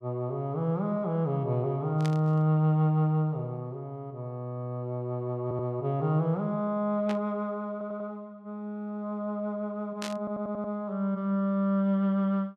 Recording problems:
burst of static; at 2 s, at 7 s and at 10 s; peak -3 dB vs average level
audio stuttering; at 5.5 s, at 7.5 s and at 10 s

